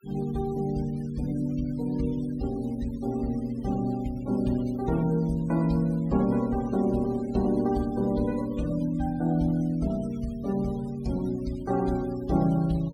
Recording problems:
noise reduction artefacts; signal-to-artefact ratio 22 dB

